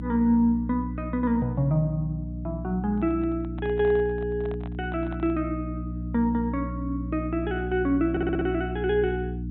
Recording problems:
treble cut off; nothing above 3.9 kHz
hum; 60 Hz, harmonics up to 300 Hz, SNR 7 dB
handling noise; from 3 to 5.5 s; peak -12 dB vs average level
audio stuttering; at 8 s

